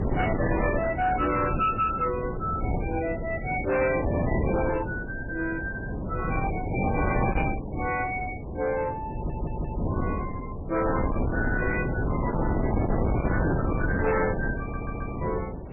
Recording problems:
codec artefacts; MP3, log-spectral distance 4 dB, nothing above 2.4 kHz
distortion; soft clipping, signal-to-distortion ratio 11 dB
wind on the microphone; below 430 Hz, SNR 1 dB
audio stuttering; at 9 s and at 15 s

